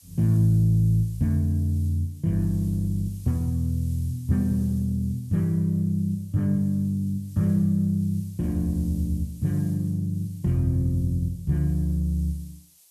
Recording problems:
hiss; SNR 27 dB

